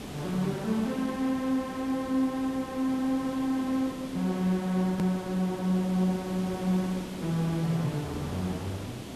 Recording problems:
background hiss; SNR 11 dB
edit click; at 5 s

